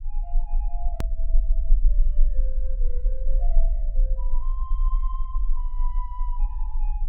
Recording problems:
rumble; below 34 Hz, strongest tone 22 Hz, SNR -17 dB
edit click; at 1 s

